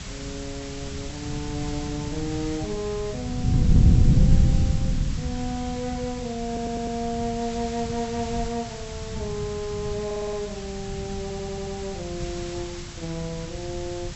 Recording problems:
treble cut off; nothing above 7.9 kHz
hiss; slope 0 dB per octave, SNR 8 dB
wind on the microphone; below 150 Hz, SNR -5 dB
audio stuttering; at 6.5 s, at 10 s and at 11 s

